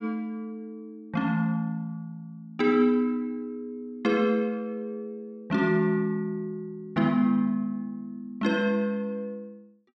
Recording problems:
none

